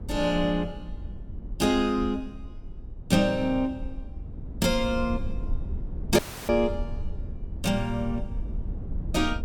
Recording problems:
low-frequency rumble; below 78 Hz, SNR 10 dB
audio cutting out; at 6 s

